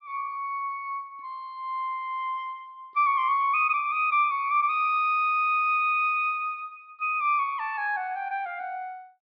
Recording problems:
treble missing; nothing above 5.5 kHz

